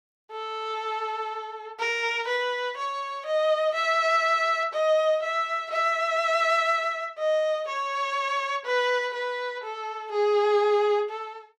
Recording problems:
none

